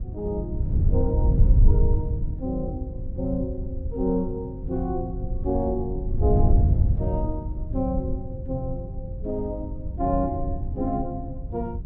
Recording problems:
wind noise; below 94 Hz, SNR -3 dB

